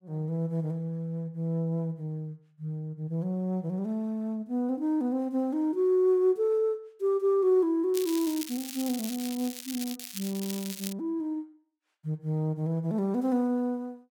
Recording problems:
crackle; from 8 to 11 s; loose cable, SNR 9 dB

